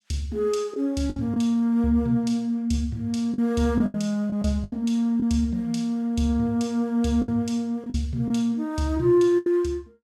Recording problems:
packet loss; 6% of the sound replaced, filled with the last packet

